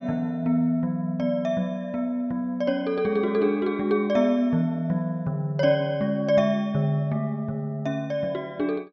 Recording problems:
none

